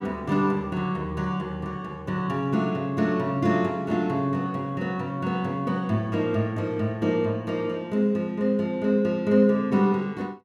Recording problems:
none

